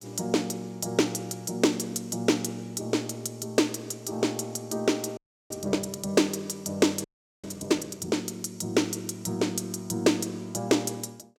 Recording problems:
frozen audio; at 5 s and at 7 s

